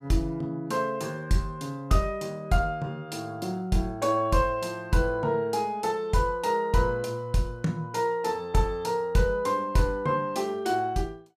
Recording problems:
none

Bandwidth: 14.5 kHz